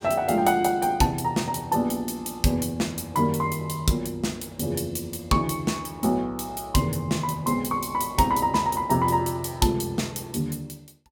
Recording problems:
none

